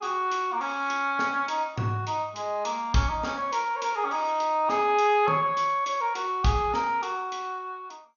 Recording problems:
lossy compression; MP2, log-spectral distance 3 dB, nothing above 6.5 kHz

